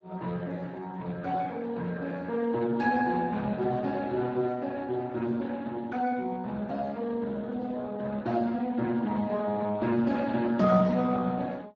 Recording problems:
lossy codec; Speex, log-spectral distance 3 dB

